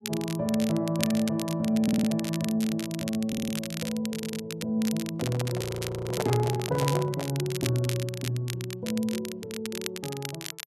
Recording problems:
crackling; vinyl, SNR 9 dB
stutter; at 2 s, at 3.5 s and at 4 s
handling noise; from 5 to 7.5 s; peak +2 dB vs average level
audio freezing; at 5.5 s

